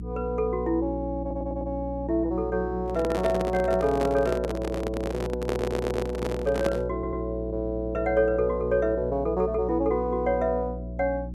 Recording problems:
hum; 60 Hz, harmonics up to 360 Hz, SNR 9 dB
stutter; at 1 s, at 5.5 s and at 7 s
microphone handling noise; from 3 to 7 s; peak +3 dB vs average level

